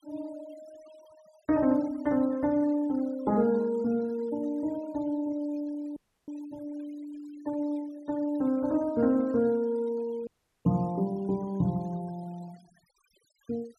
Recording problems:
noise reduction artefacts; signal-to-artefact ratio 25 dB
audio cutting out; at 6 s and at 10 s

